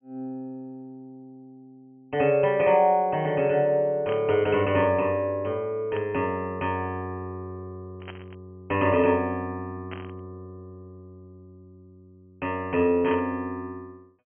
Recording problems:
treble cut off; nothing above 3.2 kHz
burst of static; 5 times, first at 4 s; peak -9 dB vs average level

